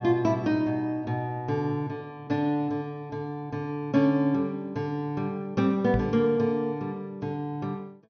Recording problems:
treble missing; nothing above 6.4 kHz
microphone bump; at 6 s; peak +3 dB vs average level

